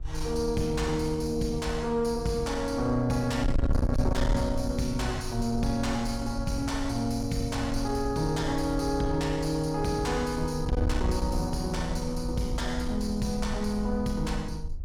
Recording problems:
distorted audio; soft clipping, signal-to-distortion ratio 7 dB
wind noise; below 78 Hz, SNR 6 dB

